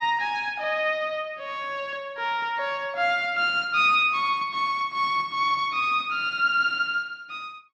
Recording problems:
none

